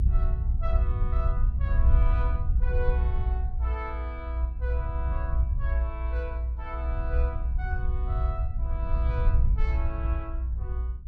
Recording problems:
low-frequency rumble; below 64 Hz, SNR -11 dB

